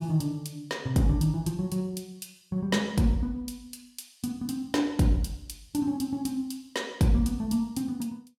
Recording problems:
none

